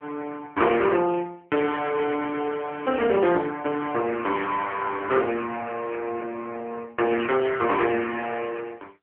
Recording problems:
phone line; 260 Hz to 3.2 kHz, AMR-NB

